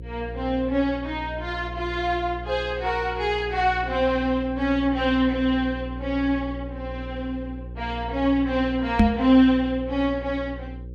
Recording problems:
electrical hum; 60 Hz, harmonics up to 540 Hz, SNR 12 dB
microphone bump; at 9 s; peak +9 dB vs average level

